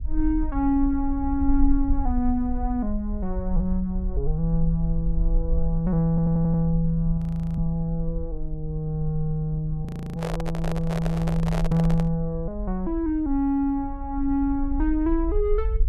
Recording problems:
low-frequency rumble; below 48 Hz, SNR 6 dB
audio stuttering; at 6 s
audio freezing; at 7 s and at 10 s
handling noise; from 10 to 12 s; peak -3 dB vs average level

